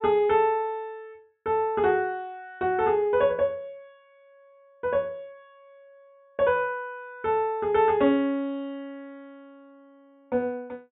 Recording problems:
treble missing; nothing above 3.9 kHz

